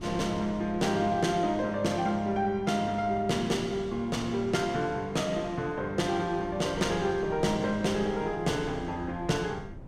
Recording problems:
wind noise; below 210 Hz, SNR 18 dB

